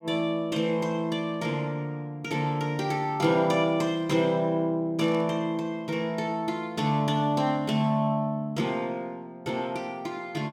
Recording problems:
static burst; at 5 s; peak -15 dB vs average level

